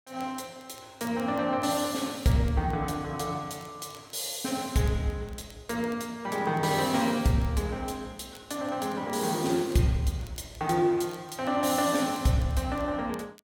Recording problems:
crackling; vinyl, SNR 28 dB

